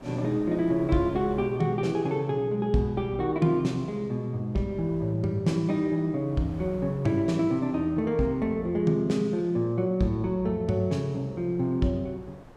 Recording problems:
wind on the microphone; below 800 Hz, SNR 24 dB

